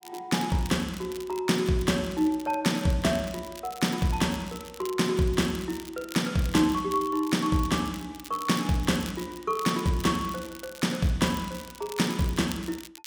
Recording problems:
crackle; vinyl, SNR 17 dB

